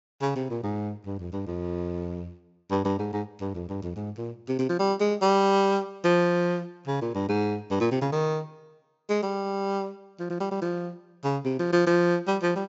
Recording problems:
treble missing; nothing above 7.5 kHz

